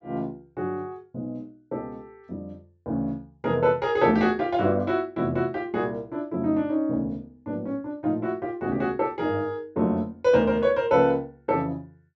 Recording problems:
treble cut off; nothing above 8 kHz

